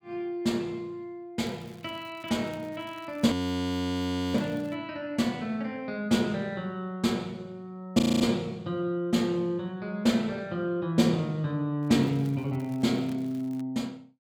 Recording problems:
crackling; from 1.5 to 4.5 s and from 12 to 14 s; loose cable, SNR 27 dB
audio freezing; at 3.5 s for 1 s and at 8 s

